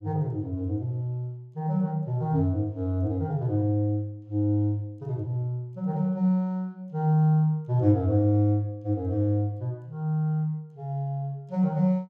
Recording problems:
none

